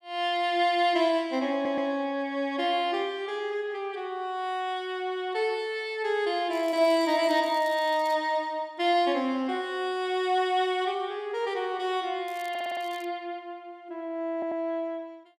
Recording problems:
stutter; at 1.5 s, at 13 s and at 14 s
crackle; from 6.5 to 8 s and at 12 s; loose cable, SNR 24 dB

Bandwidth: 15 kHz